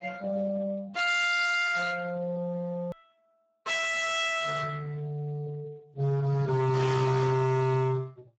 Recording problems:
lossy codec; Speex, log-spectral distance 4 dB, nothing above 7.6 kHz
distortion; hard clipping, signal-to-distortion ratio 6 dB
click at an edit; at 3 s

